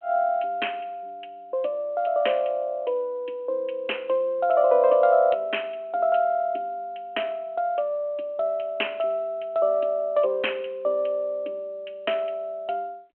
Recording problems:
phone line; 260 Hz to 3.2 kHz, G.726

